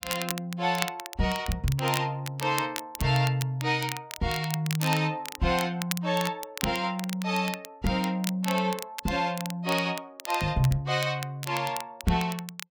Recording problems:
crackling; vinyl, SNR 9 dB

